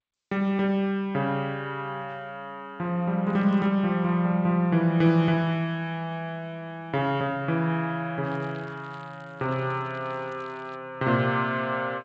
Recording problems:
codec artefacts; G.722, log-spectral distance 2 dB
crackle; at 3.5 s and from 8 to 11 s; loose cable, SNR 29 dB

